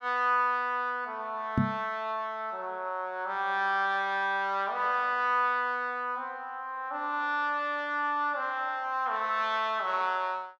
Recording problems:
microphone bump; at 1.5 s; peak +6 dB vs average level

